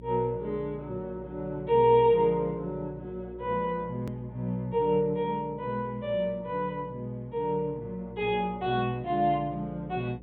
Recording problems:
treble missing; nothing above 4 kHz
mains hum; 60 Hz, harmonics up to 540 Hz, SNR 19 dB
edit click; at 4 s

